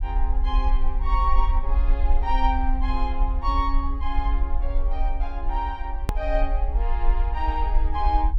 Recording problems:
rumble; below 48 Hz, SNR -3 dB
hard cut with a click; at 6 s

